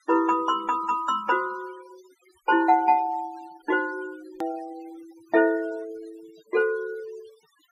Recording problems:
noise reduction artefacts; signal-to-artefact ratio 23 dB
hard cut with a click; at 4.5 s

